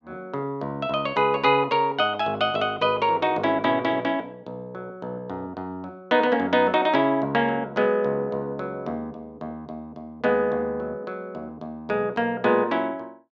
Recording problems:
none

